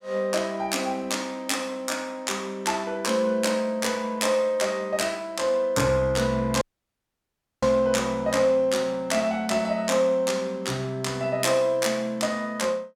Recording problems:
dropout; at 6.5 s for 1 s

